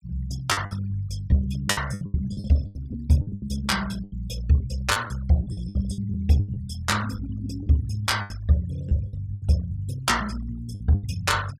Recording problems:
noise reduction artefacts; signal-to-artefact ratio 21 dB
lost packets; 13% of the sound replaced, filled with the last packet

